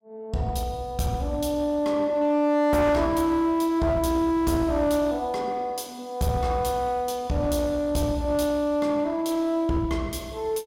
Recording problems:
distorted audio; hard clipping, uneven, signal-to-distortion ratio 11 dB

